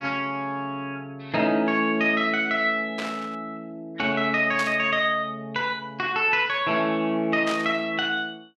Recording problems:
burst of static; at 3 s, at 4.5 s and at 7.5 s; peak -5 dB vs average level

